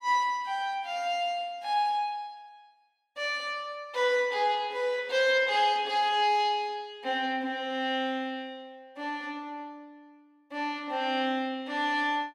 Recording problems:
none

